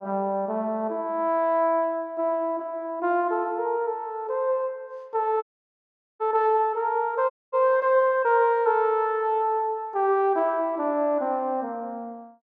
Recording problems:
dropout; at 5.5 s for 1 s and at 7.5 s

